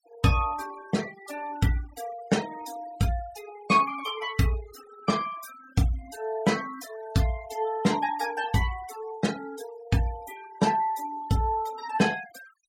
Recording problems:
noise reduction artefacts; signal-to-artefact ratio 16 dB

